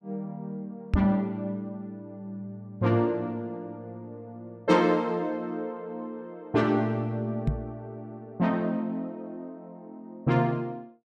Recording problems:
microphone bump; at 1 s and at 7.5 s; peak +8 dB vs average level

